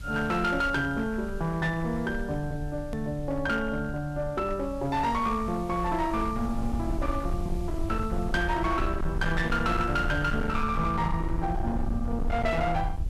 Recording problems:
distortion; hard clipping, signal-to-distortion ratio 10 dB
background hiss; SNR 26 dB
low-frequency rumble; below 86 Hz, SNR 7 dB
edit click; at 3 s

